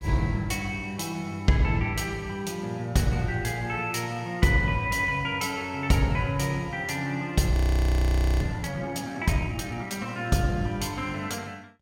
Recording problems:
frozen audio; at 7.5 s for 1 s

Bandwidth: 16 kHz